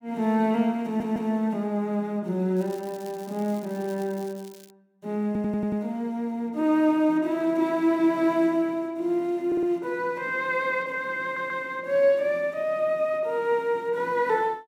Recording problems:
audio stuttering; 4 times, first at 1 s
crackle; from 2.5 to 4.5 s; loose cable, SNR 24 dB

